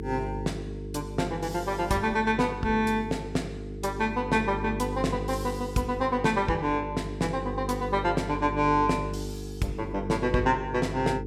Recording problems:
electrical hum; 50 Hz, harmonics up to 450 Hz, SNR 8 dB

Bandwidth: 16 kHz